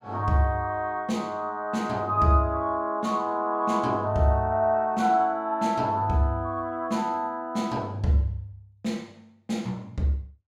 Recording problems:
none

